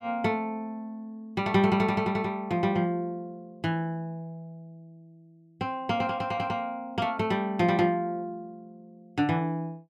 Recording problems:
none

